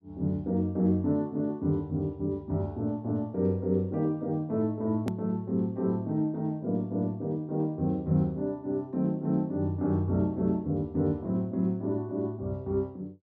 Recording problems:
click at an edit; at 5 s

